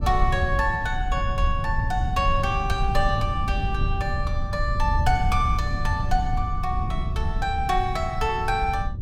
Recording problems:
rumble; below 94 Hz, SNR 1 dB

